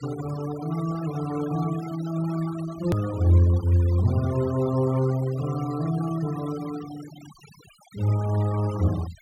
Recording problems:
denoising artefacts; signal-to-artefact ratio 18 dB
hard cut with a click; at 3 s

